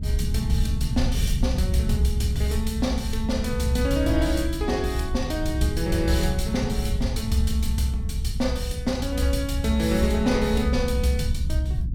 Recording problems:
rumble; below 96 Hz, SNR 2 dB

